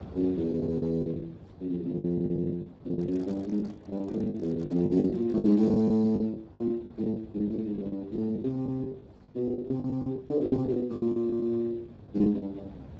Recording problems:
lossy codec; Speex, log-spectral distance 3 dB
rumble; below 380 Hz, SNR 20 dB
lost packets; 19% of the sound replaced, filled with the last packet
microphone handling noise; from 3 to 6 s; peak -12 dB vs average level

